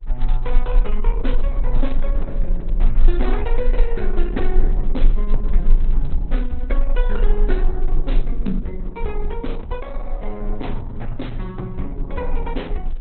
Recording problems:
lossy compression; Opus, log-spectral distance 2 dB, nothing above 4 kHz
rumble; below 32 Hz, strongest tone 20 Hz, SNR -6 dB

